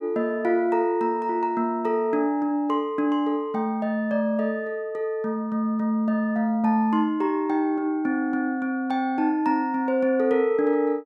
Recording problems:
none

